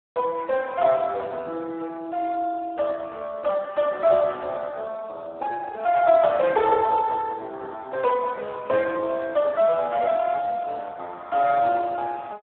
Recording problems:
phone line; 340 Hz to 3 kHz, Speex

